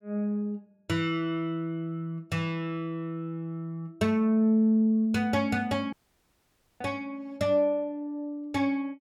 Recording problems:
dropout; at 6 s for 1 s

